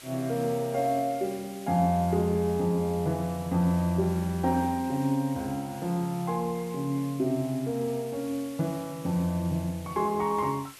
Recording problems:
hiss; slope +1 dB per octave, SNR 19 dB

